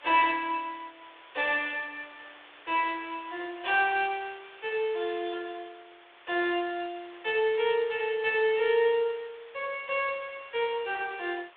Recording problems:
phone line; 300 Hz to 3.6 kHz, G.726
background hiss; SNR 22 dB

